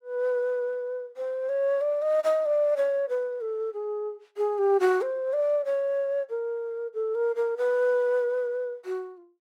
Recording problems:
none

